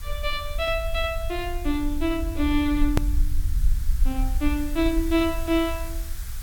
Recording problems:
hiss; SNR 17 dB
low-frequency rumble; below 56 Hz, SNR 4 dB
hard cut with a click; at 3 s

